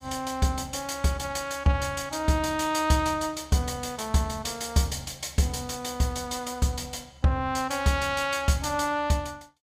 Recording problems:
none

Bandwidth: 15.5 kHz